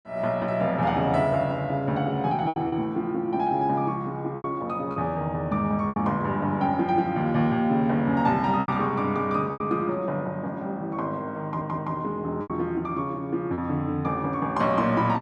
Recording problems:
lost packets; 4% of the sound replaced, filled with repeated pitch periods
stutter; at 11 s

